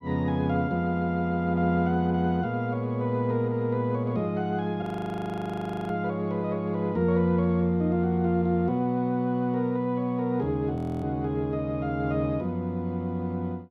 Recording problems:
audio freezing; at 5 s for 1 s and at 11 s

